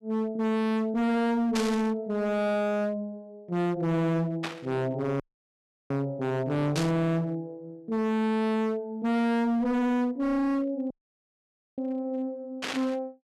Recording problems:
distorted audio; hard clipping, signal-to-distortion ratio 6 dB
static burst; 4 times, first at 1.5 s; peak -1 dB vs average level
audio cutting out; at 5 s for 0.5 s and at 11 s for 1 s

